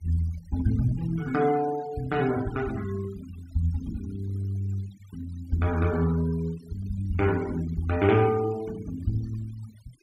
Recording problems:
noise reduction artefacts; signal-to-artefact ratio 20 dB

